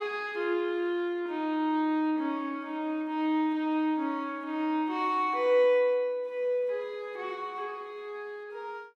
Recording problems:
none

